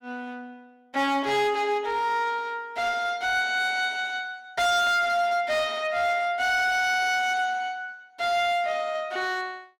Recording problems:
distortion; hard clipping, uneven, signal-to-distortion ratio 11 dB

